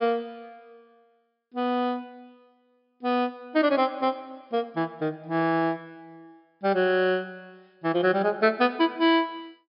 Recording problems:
treble missing; nothing above 5.5 kHz

